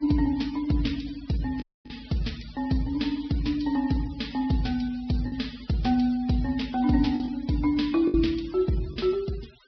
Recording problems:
treble missing; nothing above 5.5 kHz
denoising artefacts; signal-to-artefact ratio 21 dB
lost packets; 3% of the sound replaced, filled with the last packet
audio cutting out; at 1.5 s

